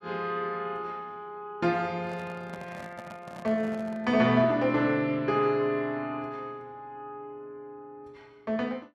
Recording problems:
handling noise; from 2 to 4 s; peak -11 dB vs average level

